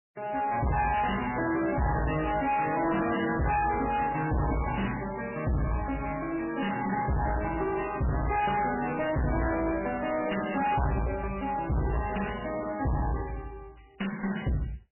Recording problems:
lossy compression; MP3, log-spectral distance 9 dB, nothing above 2.8 kHz
distortion; hard clipping, uneven, signal-to-distortion ratio 5 dB

